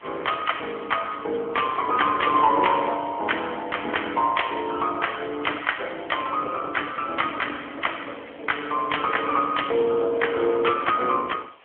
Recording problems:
telephone audio; 320 Hz to 3.3 kHz, AMR-NB
hiss; SNR 27 dB

